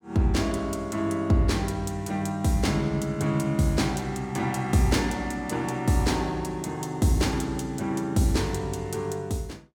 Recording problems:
none

